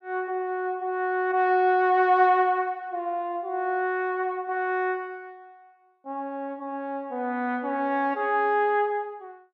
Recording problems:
none

